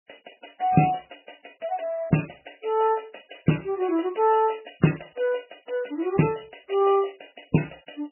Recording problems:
lossy compression; MP3, log-spectral distance 12 dB, nothing above 2.9 kHz

